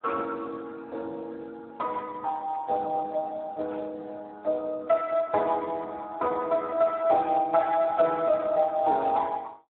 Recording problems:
phone line; 300 Hz to 2 kHz, Speex

